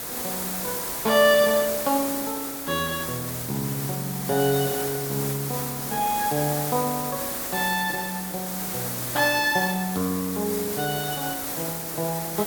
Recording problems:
background hiss; SNR 3 dB

